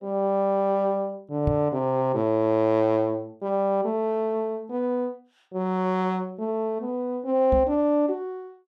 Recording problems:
microphone thump; at 1.5 s and at 7.5 s; peak +2 dB vs average level

